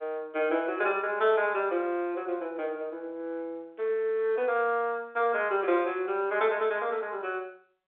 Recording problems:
phone line; 260 Hz to 3.7 kHz, G.711

